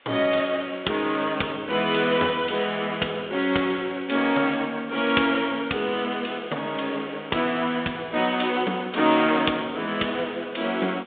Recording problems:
telephone audio; 220 Hz to 3.7 kHz, G.726
background hiss; SNR 27 dB

